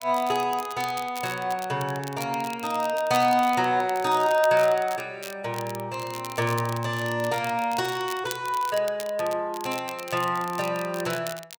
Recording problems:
crackling; vinyl, SNR 15 dB

